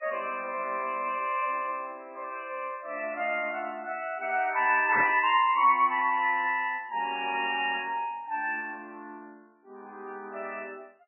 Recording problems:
lossy codec; MP3, log-spectral distance 3 dB, nothing above 2.8 kHz
burst of static; at 5 s; peak +1 dB vs average level

